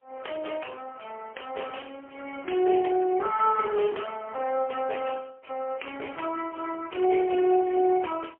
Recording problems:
phone line; 320 Hz to 3 kHz, AMR-NB, then MP3

